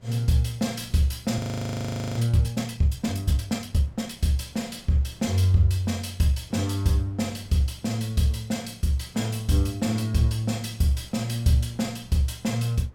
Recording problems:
wind noise; below 400 Hz, SNR 28 dB
frozen audio; at 1.5 s for 1 s

